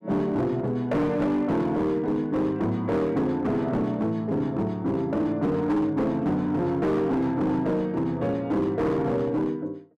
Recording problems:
distortion; hard clipping, signal-to-distortion ratio 10 dB

